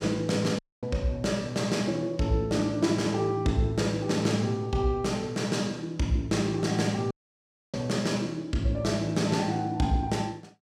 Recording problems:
dropout; at 0.5 s and at 7 s for 0.5 s

